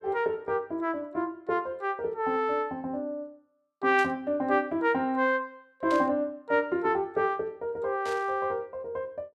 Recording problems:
burst of static; at 4 s, at 6 s and at 8 s; peak -9 dB vs average level

